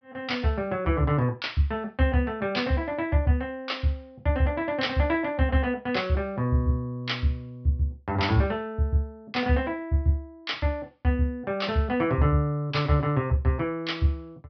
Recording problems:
treble missing; nothing above 5.5 kHz

